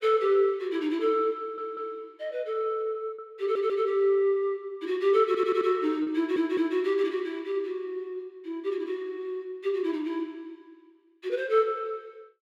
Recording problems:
lost packets; 0.8% of the sound replaced, filled with repeated pitch periods
audio stuttering; 4 times, first at 1.5 s

